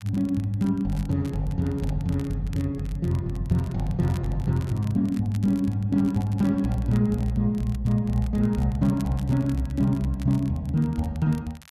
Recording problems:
crackling; vinyl, SNR 25 dB

